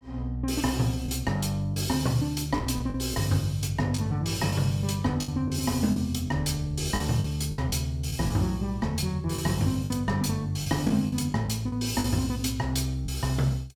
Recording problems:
lost packets; 6% of the sound replaced, filled with the last packet

